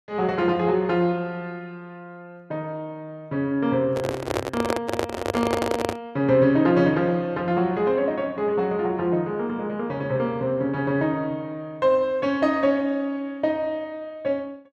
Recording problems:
microphone handling noise; from 4 to 6 s; peak +4 dB vs average level

